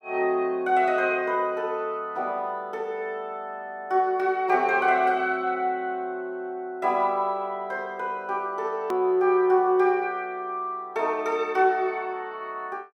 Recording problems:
click at an edit; at 9 s

